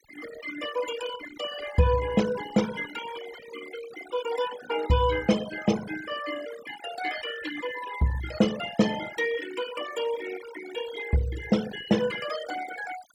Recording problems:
noise reduction artefacts; signal-to-artefact ratio 11 dB

